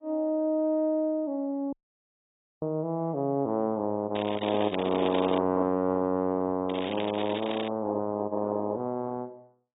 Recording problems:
lossy compression; AAC, log-spectral distance 5 dB
dropout; at 1.5 s for 1 s
crackle; from 4 to 5.5 s and from 6.5 to 7.5 s; loose cable, SNR 12 dB

